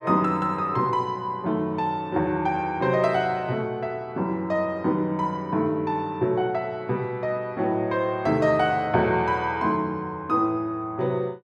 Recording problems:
none

